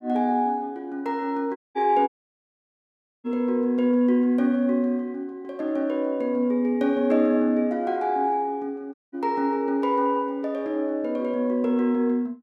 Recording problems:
dropout; at 1.5 s, at 2 s for 1 s and at 9 s

